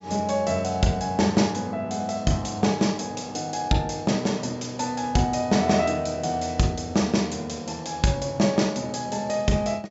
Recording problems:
low-pass filter; nothing above 8 kHz

